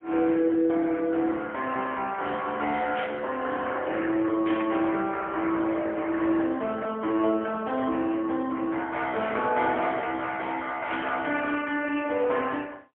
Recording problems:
telephone audio; 240 Hz to 3.3 kHz, AMR-NB, then MP3
burst of static; at 3 s, at 4.5 s and at 11 s; peak -4 dB vs average level

